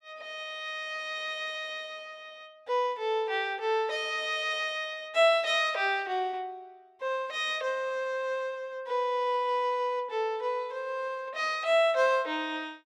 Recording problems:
none

